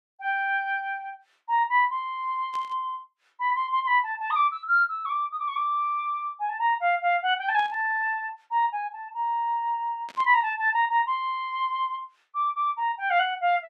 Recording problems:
burst of static; at 2.5 s, at 7.5 s and at 10 s; peak -14 dB vs average level

